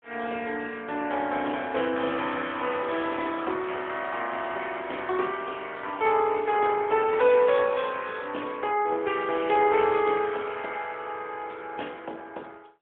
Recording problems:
phone line; 300 Hz to 3.4 kHz, AMR-NB, then MP3

